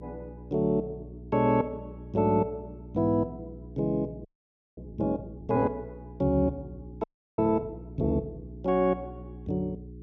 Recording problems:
electrical hum; 60 Hz, harmonics up to 420 Hz, SNR 15 dB
audio freezing; at 4.5 s for 0.5 s and at 7 s

